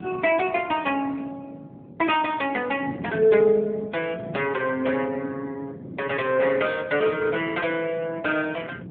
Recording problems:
telephone audio; 220 Hz to 3.4 kHz, AMR-NB
wind on the microphone; below 340 Hz, SNR 16 dB

